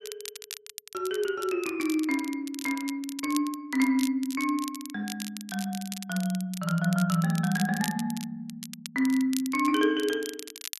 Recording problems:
crackling; vinyl, SNR 12 dB

